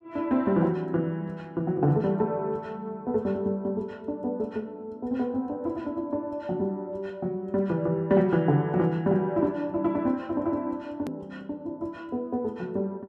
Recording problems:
edit click; at 11 s

